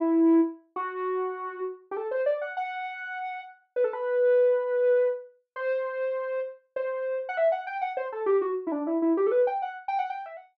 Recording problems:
none

